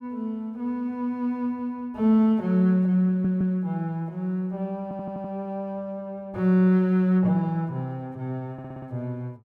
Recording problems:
audio stuttering; at 3 s, at 5 s and at 8.5 s

